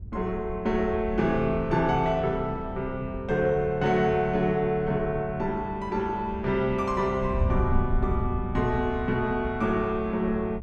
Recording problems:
wind noise; below 94 Hz, SNR 9 dB

